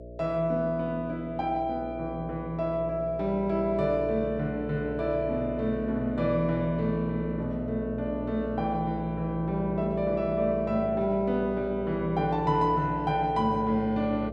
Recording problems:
hum; 60 Hz, harmonics up to 660 Hz, SNR 11 dB

